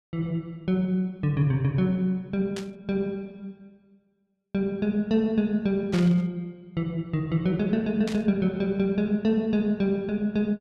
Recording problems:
burst of static; at 2.5 s, at 6 s and at 8 s; peak -6 dB vs average level

